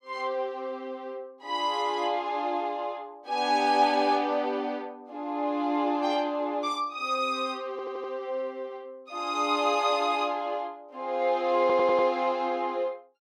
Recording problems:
audio stuttering; at 7.5 s and at 12 s

